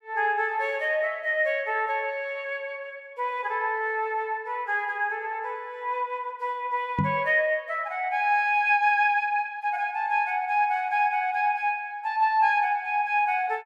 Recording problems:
knock on the microphone; at 7 s; peak +2 dB vs average level

